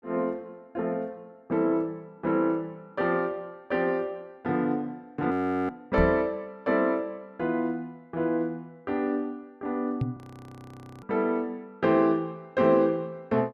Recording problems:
frozen audio; at 5.5 s and at 10 s for 1 s
microphone bump; at 6 s and at 10 s; peak +4 dB vs average level

